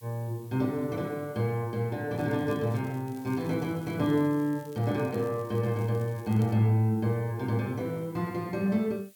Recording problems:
hiss; slope +3 dB per octave, SNR 27 dB
crackling; at 2 s and from 3 to 6.5 s; loose cable, SNR 27 dB

